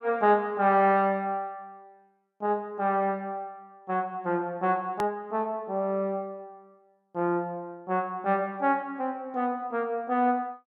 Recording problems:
edit click; at 5 s

